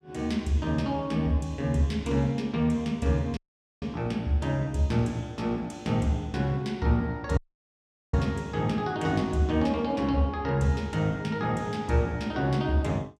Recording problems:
audio cutting out; at 3.5 s and at 7.5 s for 1 s

